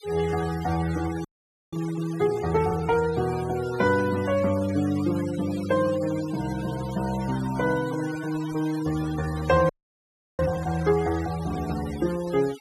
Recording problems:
denoising artefacts; signal-to-artefact ratio 15 dB
audio freezing; at 1.5 s and at 9.5 s for 0.5 s

